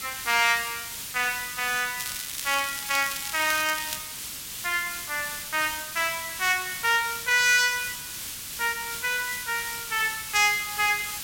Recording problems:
background hiss; SNR 8 dB
crackle; from 2 to 4 s; loose cable, SNR 9 dB

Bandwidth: 16.5 kHz